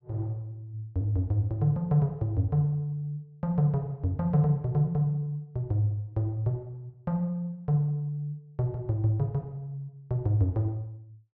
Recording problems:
low-pass filter; nothing above 7.8 kHz

